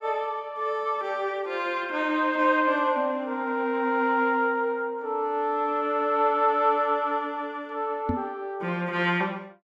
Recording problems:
microphone bump; at 8 s; peak +2 dB vs average level

